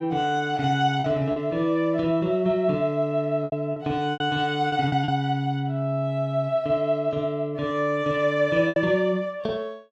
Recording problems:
packet loss; 5% of the sound replaced, filled with repeated pitch periods

